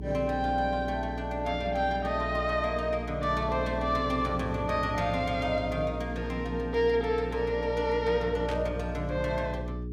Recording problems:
mains hum; 60 Hz, harmonics up to 420 Hz, SNR 8 dB
burst of static; at 8.5 s; peak -7 dB vs average level

